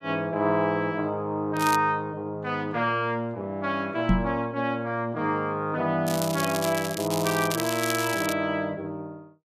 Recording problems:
crackle; at 1.5 s and from 6 to 8.5 s; loose cable, SNR 7 dB
microphone bump; at 4 s; peak +7 dB vs average level

